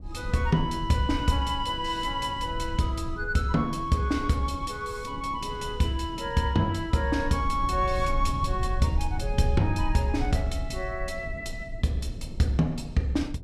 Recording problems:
rumble; below 72 Hz, SNR 9 dB
wind noise; below 300 Hz, SNR 18 dB

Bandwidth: 14.5 kHz